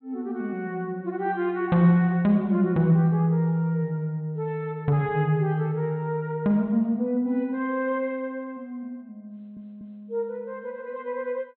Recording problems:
low-pass filter; nothing above 4.1 kHz
audio stuttering; at 9.5 s

